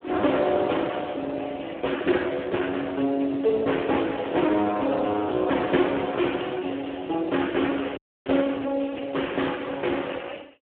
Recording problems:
phone line; 220 Hz to 3.3 kHz, Speex
audio freezing; at 8 s

